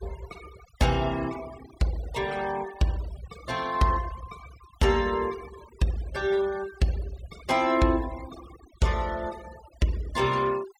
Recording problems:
noise reduction artefacts; signal-to-artefact ratio 18 dB

